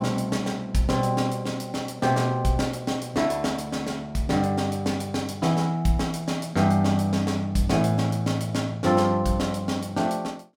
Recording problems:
none

